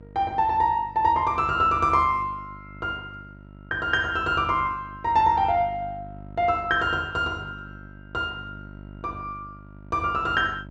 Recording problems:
hum; 50 Hz, harmonics up to 700 Hz, SNR 20 dB

